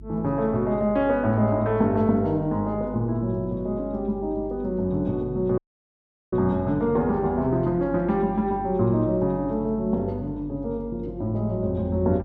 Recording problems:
hum; 50 Hz, harmonics up to 350 Hz, SNR 17 dB
audio cutting out; at 5.5 s for 0.5 s

